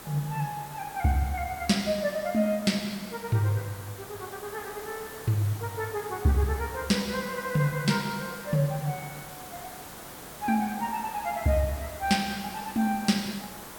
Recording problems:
background hiss; slope -4 dB per octave, SNR 13 dB

